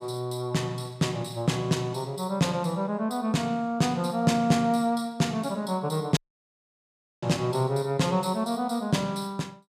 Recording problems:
audio cutting out; at 6 s for 1 s

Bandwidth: 15 kHz